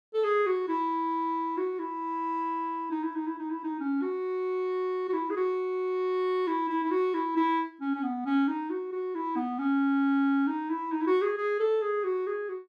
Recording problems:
none

